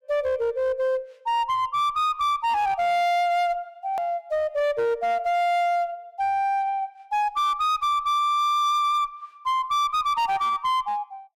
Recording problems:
distortion; hard clipping, uneven, signal-to-distortion ratio 10 dB
click at an edit; at 4 s

